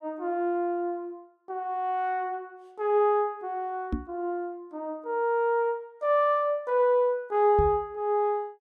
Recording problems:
microphone bump; at 4 s and at 7.5 s; peak +1 dB vs average level

